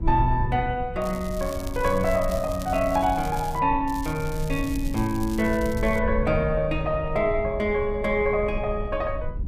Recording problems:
low-frequency rumble; below 86 Hz, SNR 9 dB
crackle; from 1 to 3.5 s and from 4 to 6 s; loose cable, SNR 18 dB

